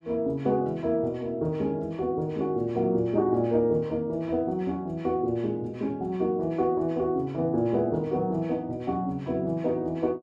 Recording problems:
none

